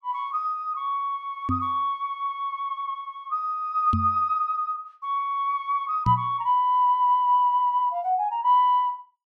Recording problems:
knock on the microphone; at 1.5 s, at 4 s and at 6 s; peak +2 dB vs average level

